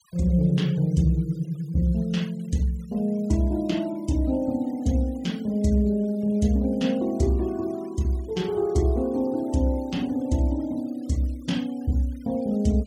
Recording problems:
denoising artefacts; signal-to-artefact ratio 26 dB

